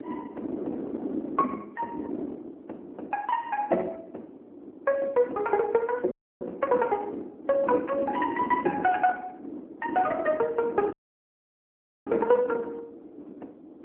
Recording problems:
phone line; 240 Hz to 2.9 kHz, AMR-NB
wind noise; below 390 Hz, SNR 10 dB
audio cutting out; at 6 s and at 11 s for 1 s

